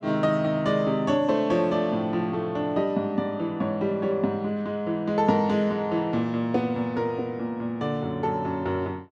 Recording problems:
none

